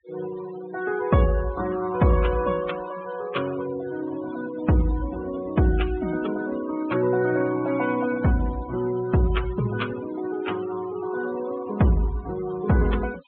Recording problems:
treble cut off; nothing above 4 kHz
denoising artefacts; signal-to-artefact ratio 16 dB

